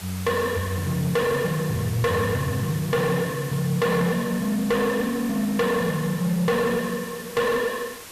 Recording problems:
distorted audio; soft clipping, signal-to-distortion ratio 6 dB
background hiss; slope -2 dB per octave, SNR 14 dB

